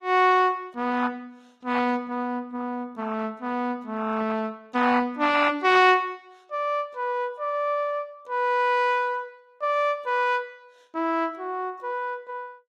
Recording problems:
codec artefacts; AAC, log-spectral distance 2 dB

